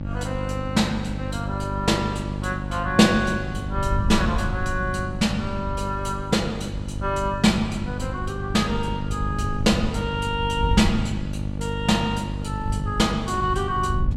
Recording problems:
hum; 50 Hz, harmonics up to 900 Hz, SNR 6 dB
wind noise; below 100 Hz, SNR 9 dB

